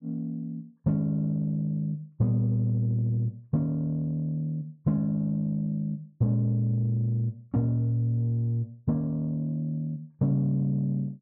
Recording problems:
none

